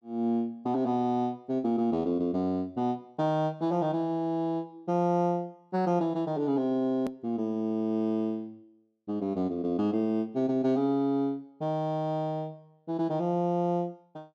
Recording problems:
edit click; at 7 s

